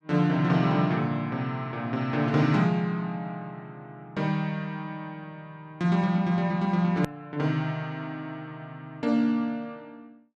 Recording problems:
click at an edit; at 7 s

